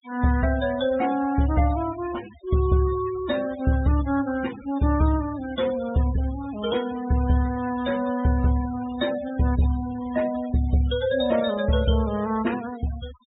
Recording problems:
treble missing; nothing above 4 kHz
denoising artefacts; signal-to-artefact ratio 18 dB

